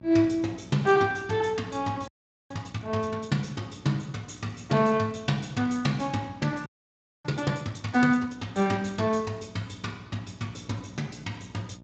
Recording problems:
lossy compression; Speex, log-spectral distance 5 dB, nothing above 7.3 kHz
hum; 60 Hz, harmonics up to 1.2 kHz, SNR 21 dB
audio freezing; at 2 s and at 6.5 s for 0.5 s

